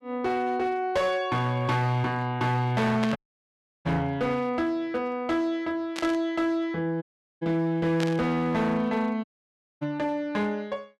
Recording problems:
distortion; hard clipping, uneven, signal-to-distortion ratio 12 dB
burst of static; at 3 s, at 6 s and at 8 s; peak -2 dB vs average level
dropout; at 3 s for 0.5 s, at 7 s and at 9 s for 0.5 s

